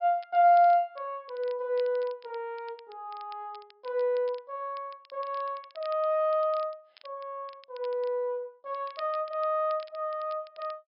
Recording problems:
low-pass filter; nothing above 5.5 kHz
crackle; vinyl, SNR 27 dB

